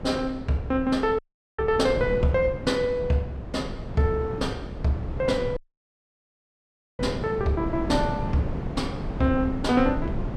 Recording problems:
wind noise; below 290 Hz, SNR 7 dB
audio cutting out; at 1 s and at 5.5 s for 1.5 s

